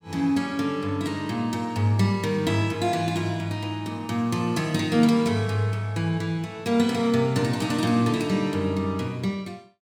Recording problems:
none

